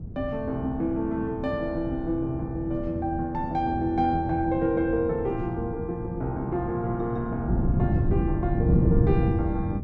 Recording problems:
wind noise; below 180 Hz, SNR 2 dB

